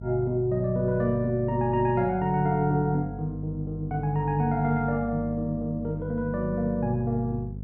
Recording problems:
hum; 50 Hz, harmonics up to 500 Hz, SNR 10 dB

